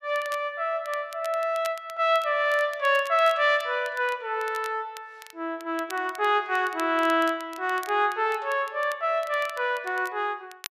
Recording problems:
crackle; vinyl, SNR 21 dB

